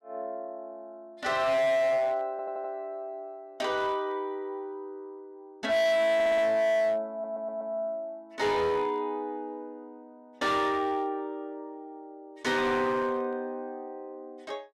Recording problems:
distortion; hard clipping, signal-to-distortion ratio 7 dB
audio stuttering; at 2.5 s, at 6 s and at 7 s

